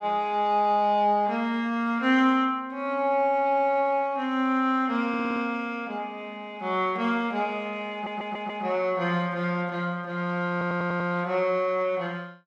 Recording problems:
stutter; at 5 s, at 8 s and at 11 s

